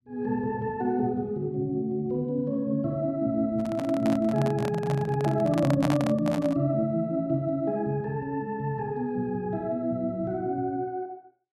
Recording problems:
microphone handling noise; from 3.5 to 6.5 s; peak +2 dB vs average level

